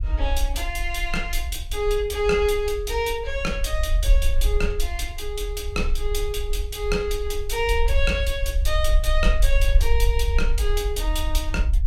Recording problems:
low-frequency rumble; below 54 Hz, SNR 0 dB

